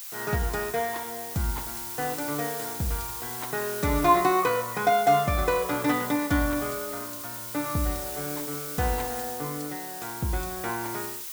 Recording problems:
hiss; SNR 6 dB

